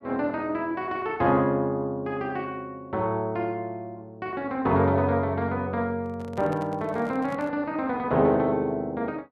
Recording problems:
handling noise; from 6 to 7.5 s; peak -9 dB vs average level

